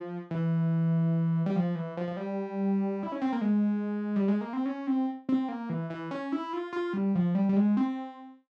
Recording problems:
none

